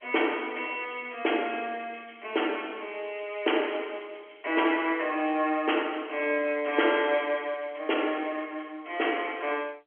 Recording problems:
telephone audio; 280 Hz to 3.3 kHz, G.711

